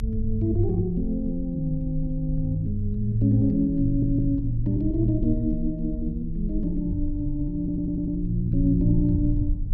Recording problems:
rumble; below 58 Hz, strongest tone 24 Hz, SNR 8 dB
stutter; at 4 s and at 7.5 s

